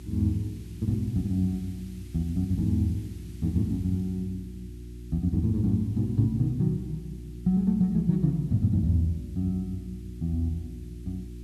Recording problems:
hum; 60 Hz, harmonics up to 360 Hz, SNR 14 dB
background hiss; slope +3 dB per octave, SNR 30 dB

